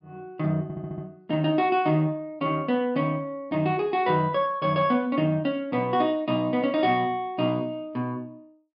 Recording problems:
low-pass filter; nothing above 5.5 kHz
stutter; at 0.5 s

